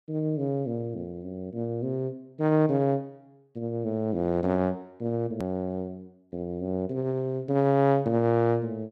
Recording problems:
edit click; at 5.5 s

